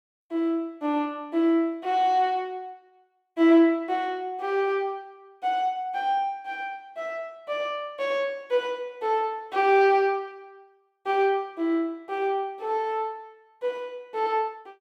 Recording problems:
none

